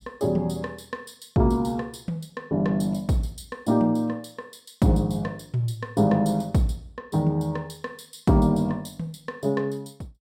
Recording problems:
none

